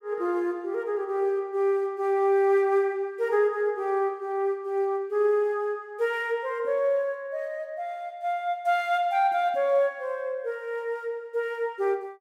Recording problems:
none

